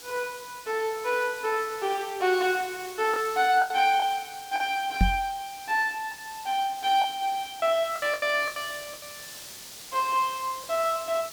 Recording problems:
hiss; slope +1 dB per octave, SNR 15 dB
lost packets; 6% of the sound replaced, filled with the last packet
knock on the microphone; at 5 s; peak +7 dB vs average level

